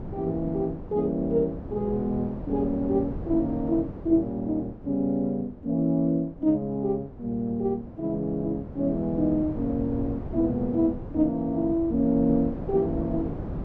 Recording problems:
wind on the microphone; below 350 Hz, SNR 11 dB

